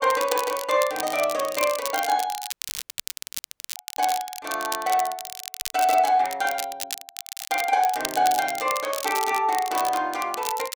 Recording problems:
crackling; vinyl, SNR 9 dB
audio cutting out; at 2.5 s for 1.5 s

